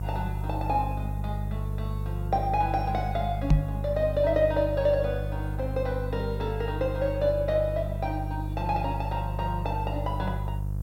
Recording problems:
hum; 50 Hz, harmonics up to 350 Hz, SNR 3 dB
background hiss; slope +3 dB per octave, SNR 30 dB
microphone bump; at 3.5 s; peak +10 dB vs average level

